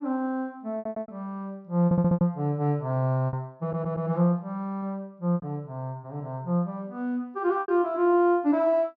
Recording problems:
packet loss; 5% of the sound replaced, filled with repeated pitch periods
stutter; at 1 s, at 2 s and at 3.5 s

